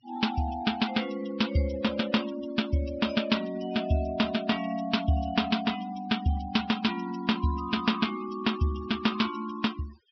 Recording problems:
treble cut off; nothing above 5.5 kHz
denoising artefacts; signal-to-artefact ratio 16 dB

